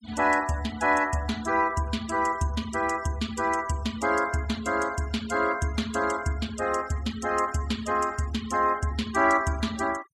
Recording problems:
denoising artefacts; signal-to-artefact ratio 19 dB

